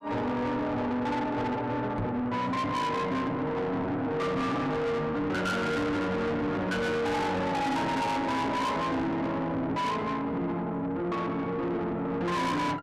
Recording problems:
distorted audio; soft clipping, signal-to-distortion ratio 6 dB
microphone thump; at 2 s; peak 0 dB vs average level

